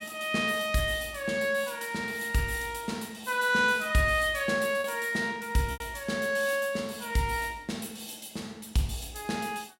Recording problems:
packet loss; 1.2% of the sound replaced, filled with repeated pitch periods

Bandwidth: 16 kHz